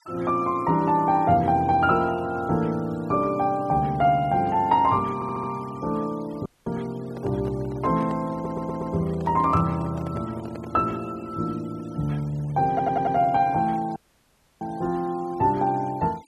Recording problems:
noise reduction artefacts; signal-to-artefact ratio 26 dB
audio stuttering; at 5 s, at 8.5 s and at 13 s
dropout; at 6.5 s and at 14 s for 0.5 s
microphone handling noise; from 7 to 11 s; peak -9 dB vs average level

